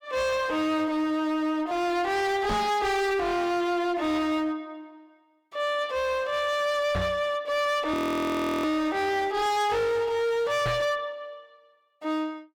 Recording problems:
distorted audio; hard clipping, signal-to-distortion ratio 7 dB
microphone bump; at 2.5 s, at 7 s and at 11 s; peak +1 dB vs average level
audio freezing; at 8 s for 0.5 s

